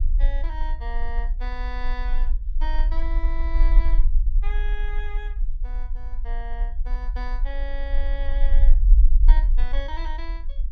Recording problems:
low-frequency rumble; below 40 Hz, strongest tone 22 Hz, SNR -13 dB

